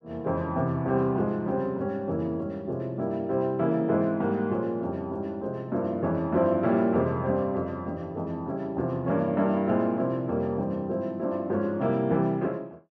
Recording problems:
none

